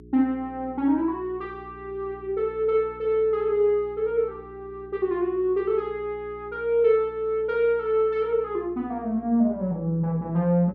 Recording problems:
hum; 60 Hz, harmonics up to 420 Hz, SNR 22 dB

